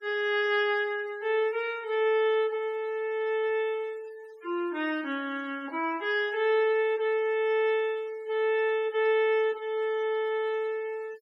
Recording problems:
denoising artefacts; signal-to-artefact ratio 25 dB

